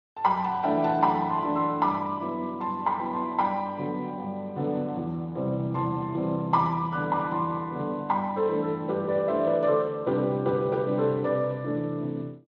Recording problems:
codec artefacts; Speex, log-spectral distance 2 dB

